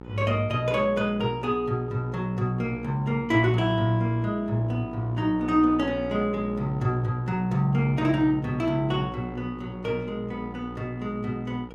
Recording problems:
hum; 60 Hz, harmonics up to 1.4 kHz, SNR 13 dB

